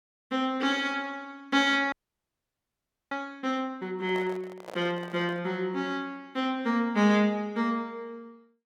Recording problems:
audio freezing; at 2 s for 1 s
handling noise; from 4 to 5.5 s; peak -9 dB vs average level

